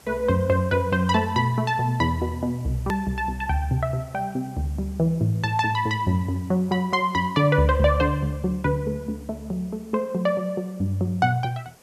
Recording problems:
background hiss; SNR 26 dB
click at an edit; at 3 s

